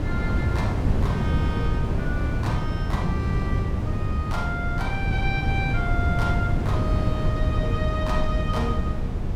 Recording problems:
rumble; below 62 Hz, SNR 4 dB
wind on the microphone; below 200 Hz, SNR -4 dB

